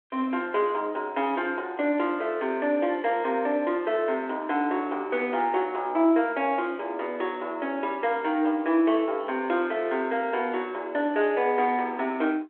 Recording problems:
phone line; 280 Hz to 3.4 kHz, G.726

